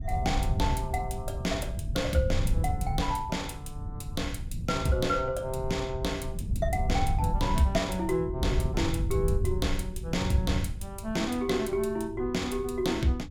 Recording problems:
wind noise; below 110 Hz, SNR 3 dB

